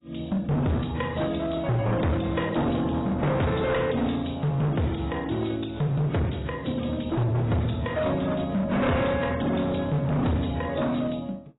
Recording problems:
codec artefacts; AAC, then AAC, log-spectral distance 6 dB, nothing above 3.8 kHz
distorted audio; hard clipping, signal-to-distortion ratio 6 dB

